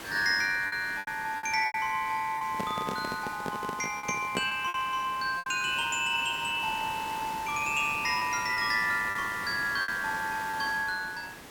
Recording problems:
hiss; slope -3 dB per octave, SNR 13 dB
lost packets; 6% of the sound replaced, filled with repeated pitch periods
handling noise; from 2.5 to 4.5 s; peak +1 dB vs average level

